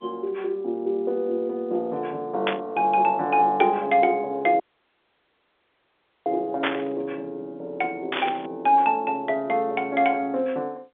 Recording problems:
phone line; 280 Hz to 3.9 kHz, G.711
static burst; at 2.5 s, at 6.5 s and at 8 s; peak +3 dB vs average level
dropout; at 4.5 s for 1.5 s

